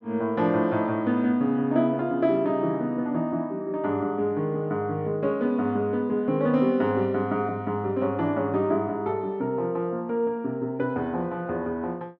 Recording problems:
none

